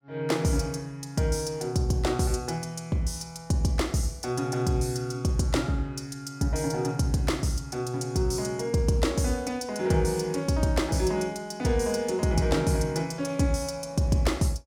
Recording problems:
none

